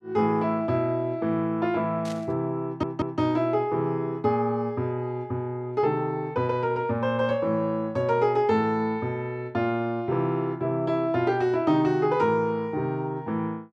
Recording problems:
static burst; at 2 s; peak -12 dB vs average level
stutter; at 2.5 s

